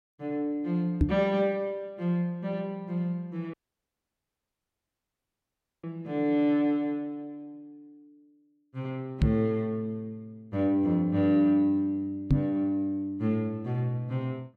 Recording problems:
microphone thump; at 1 s, at 9 s and at 12 s; peak +9 dB vs average level
audio cutting out; at 3.5 s for 2.5 s

